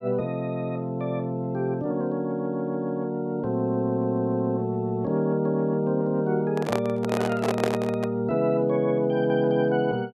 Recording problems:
microphone handling noise; from 6.5 to 8 s; peak +3 dB vs average level

